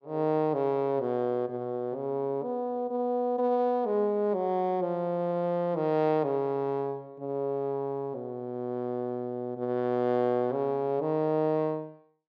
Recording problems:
none

